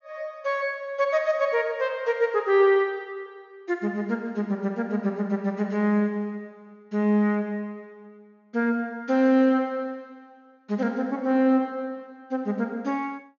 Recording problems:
low-pass filter; nothing above 6.7 kHz

